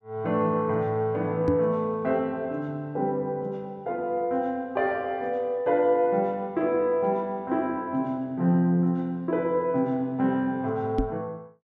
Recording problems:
knock on the microphone; at 1.5 s and at 11 s; peak +4 dB vs average level

